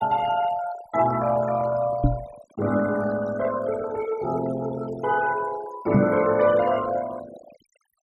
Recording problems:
noise reduction artefacts; signal-to-artefact ratio 15 dB
microphone bump; at 2 s and at 6 s; peak +8 dB vs average level

